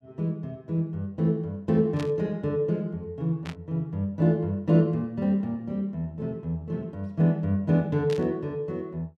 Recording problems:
static burst; at 2 s, at 3.5 s and at 8 s; peak -8 dB vs average level

